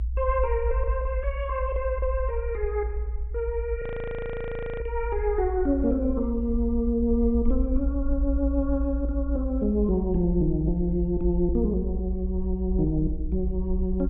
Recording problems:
low-pass filter; nothing above 3.7 kHz
rumble; below 60 Hz, SNR 4 dB
frozen audio; at 4 s for 1 s

